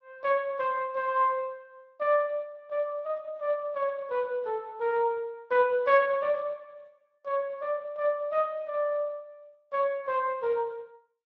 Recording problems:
lossy codec; Speex, log-spectral distance 2 dB

